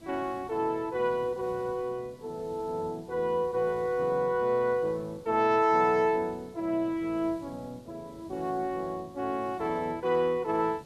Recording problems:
hiss; SNR 23 dB

